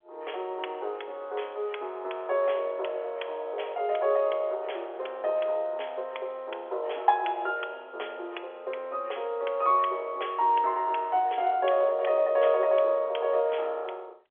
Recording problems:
phone line; 340 Hz to 3.4 kHz, G.711

